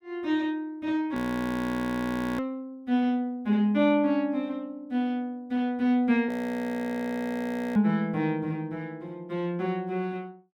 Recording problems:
frozen audio; at 1 s for 1 s and at 6.5 s for 1.5 s

